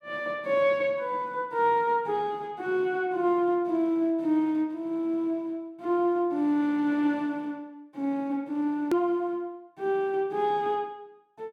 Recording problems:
edit click; at 9 s

